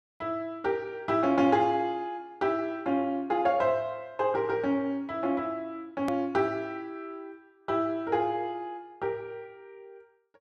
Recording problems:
hard cut with a click; at 6 s

